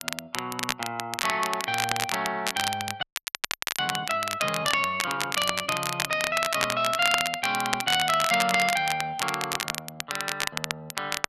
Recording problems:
crackling; vinyl, SNR 3 dB
frozen audio; at 3 s for 1 s

